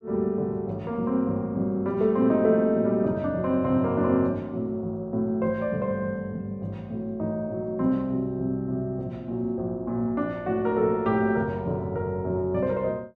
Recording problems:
none

